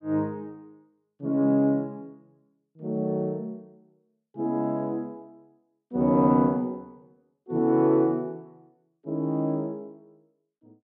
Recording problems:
none

